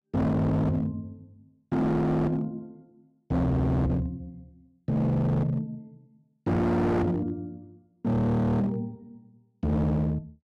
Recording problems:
distortion; hard clipping, signal-to-distortion ratio 6 dB

